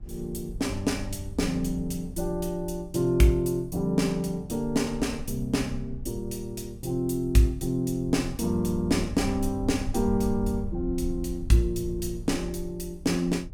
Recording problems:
low-frequency rumble; below 74 Hz, SNR 12 dB

